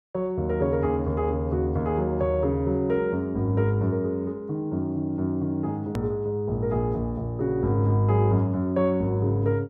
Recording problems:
edit click; at 6 s

